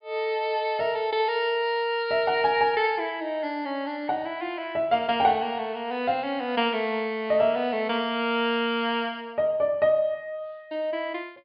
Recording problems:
treble missing; nothing above 5.1 kHz

